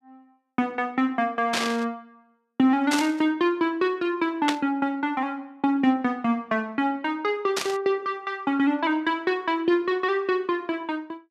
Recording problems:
burst of static; 4 times, first at 1.5 s; peak +4 dB vs average level

